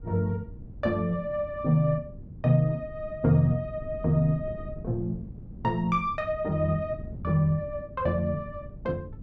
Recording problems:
wind noise; below 170 Hz, SNR 15 dB

